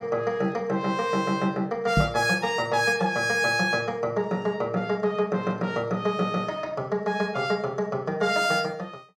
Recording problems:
knock on the microphone; at 2 s; peak +6 dB vs average level

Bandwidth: 17 kHz